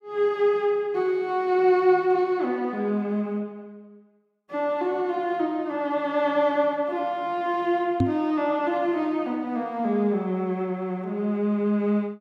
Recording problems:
microphone thump; at 8 s; peak +6 dB vs average level

